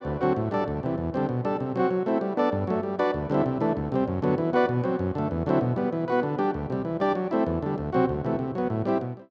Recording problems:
none

